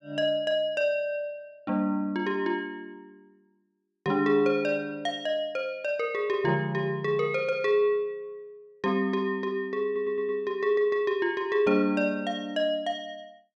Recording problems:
audio stuttering; at 10 s

